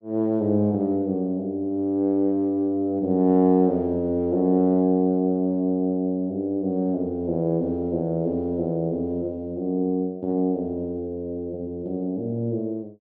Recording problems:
none

